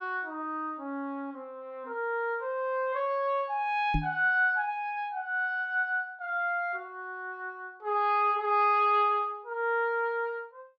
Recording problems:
microphone bump; at 4 s; peak +3 dB vs average level

